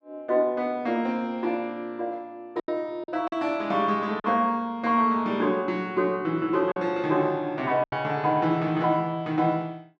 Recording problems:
packet loss; 3% of the sound replaced, filled with silence

